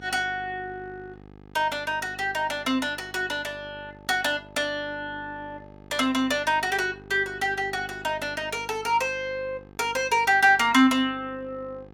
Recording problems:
electrical hum; 50 Hz, harmonics up to 1.8 kHz, SNR 22 dB

